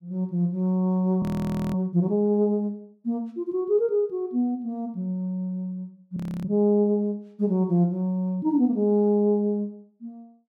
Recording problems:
audio freezing; at 1 s for 0.5 s and at 6 s

